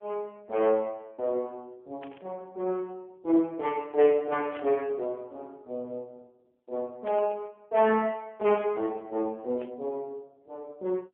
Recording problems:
telephone audio; 240 Hz to 3.2 kHz, AMR-NB
burst of static; 4 times, first at 2 s; peak -14 dB vs average level

